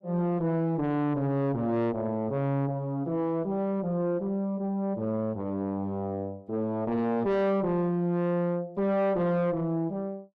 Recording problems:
distorted audio; soft clipping, signal-to-distortion ratio 5 dB

